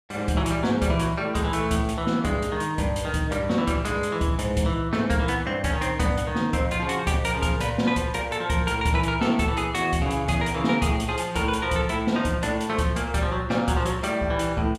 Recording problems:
none

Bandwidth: 14 kHz